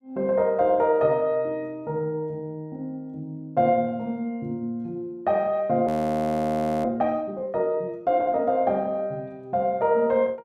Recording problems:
audio freezing; at 6 s for 1 s

